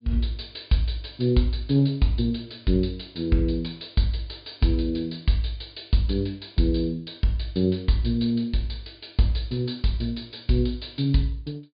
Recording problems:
treble missing; nothing above 4.9 kHz

